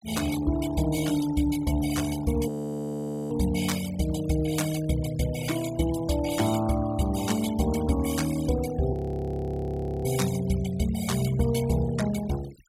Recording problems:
denoising artefacts; signal-to-artefact ratio 14 dB
audio freezing; at 2.5 s for 1 s and at 9 s for 1 s

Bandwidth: 16.5 kHz